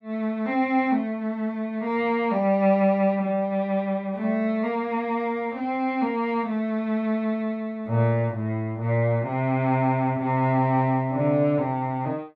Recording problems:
none

